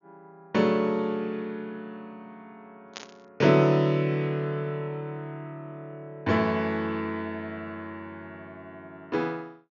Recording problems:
treble missing; nothing above 6.9 kHz
burst of static; at 3 s; peak -7 dB vs average level

